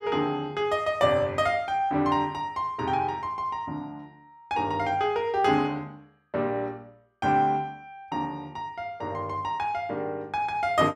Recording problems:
none

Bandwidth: 15 kHz